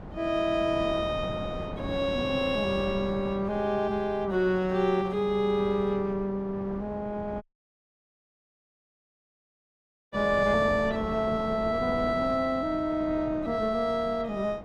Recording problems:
wind on the microphone; below 570 Hz, SNR 11 dB
dropout; at 7.5 s for 2.5 s

